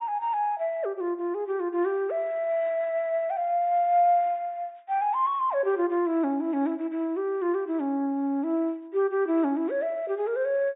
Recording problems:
treble missing; nothing above 4 kHz

